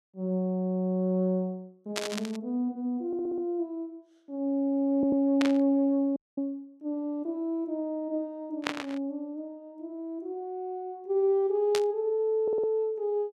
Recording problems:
burst of static; 4 times, first at 2 s; peak +3 dB vs average level
stutter; at 3 s, at 5 s and at 12 s
audio cutting out; at 6 s

